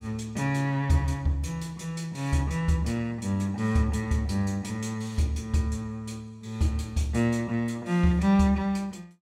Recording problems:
none

